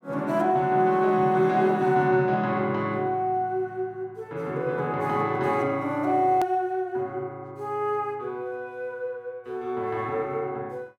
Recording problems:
edit click; at 6.5 s

